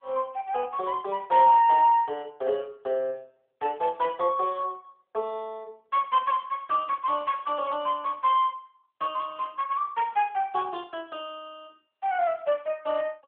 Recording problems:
telephone audio; 300 Hz to 3.4 kHz, AMR-NB

